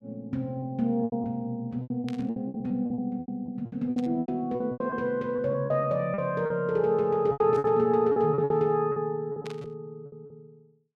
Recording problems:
packet loss; 16% of the sound replaced, filled with repeated pitch periods
static burst; 4 times, first at 2 s; peak -11 dB vs average level

